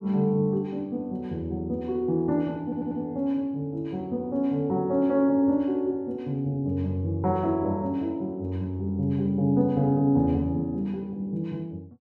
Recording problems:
audio stuttering; at 2.5 s

